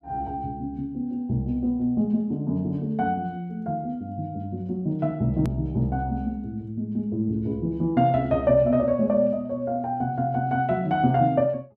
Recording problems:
edit click; at 5.5 s

